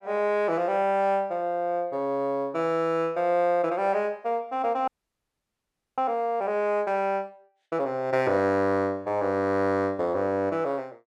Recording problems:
audio freezing; at 5 s for 1 s

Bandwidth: 13 kHz